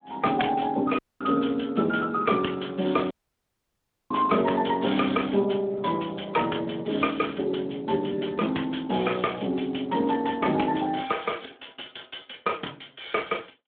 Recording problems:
phone line; 220 Hz to 3.5 kHz, Speex
audio cutting out; at 1 s and at 3 s for 1 s

